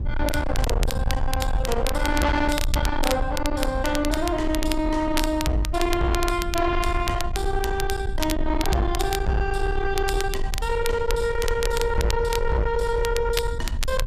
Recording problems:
distortion; soft clipping, signal-to-distortion ratio 8 dB
low-frequency rumble; below 78 Hz, SNR 5 dB
crackling; vinyl, SNR 9 dB

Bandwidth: 14.5 kHz